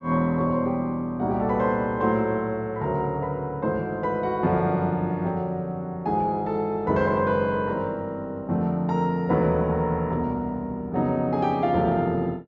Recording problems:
treble cut off; nothing above 8 kHz

